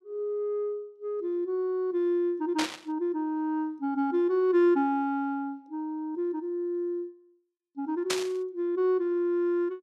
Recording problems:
burst of static; at 2.5 s and at 8 s; peak +4 dB vs average level

